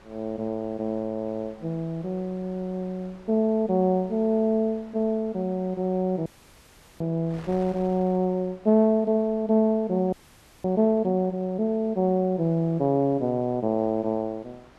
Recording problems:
wind noise; below 1.4 kHz, SNR 26 dB
audio freezing; at 6.5 s for 0.5 s and at 10 s for 0.5 s

